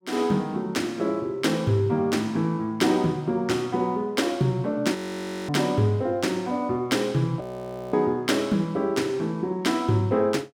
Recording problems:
audio freezing; at 5 s for 0.5 s and at 7.5 s for 0.5 s

